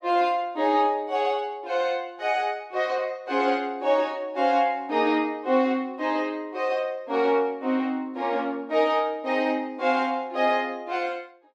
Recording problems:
none

